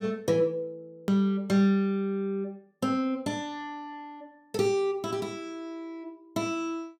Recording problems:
click at an edit; at 1 s

